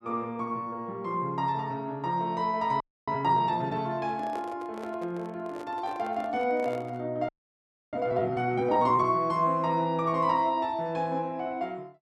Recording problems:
frozen audio; at 3 s and at 7.5 s for 0.5 s
microphone handling noise; from 4 to 7 s; peak -8 dB vs average level

